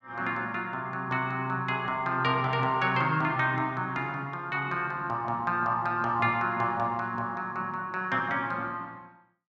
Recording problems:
none

